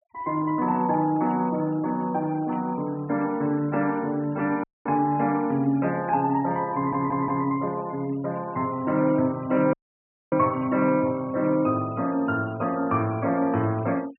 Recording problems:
treble cut off; nothing above 3.1 kHz
denoising artefacts; signal-to-artefact ratio 24 dB
burst of static; at 2.5 s; peak -22 dB vs average level
dropout; at 4.5 s and at 9.5 s for 0.5 s
stutter; at 7 s

